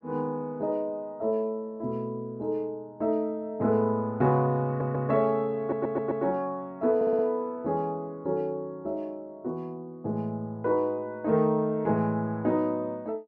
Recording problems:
audio stuttering; at 4.5 s, at 5.5 s and at 7 s

